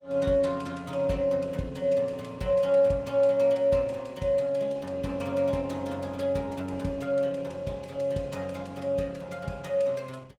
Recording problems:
lossy codec; Opus, log-spectral distance 3 dB, nothing above 19 kHz

